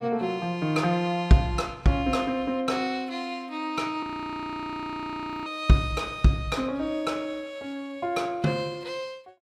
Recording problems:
frozen audio; at 4 s for 1.5 s

